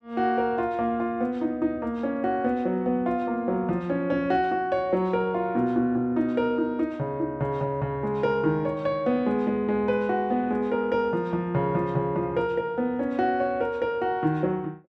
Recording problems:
none

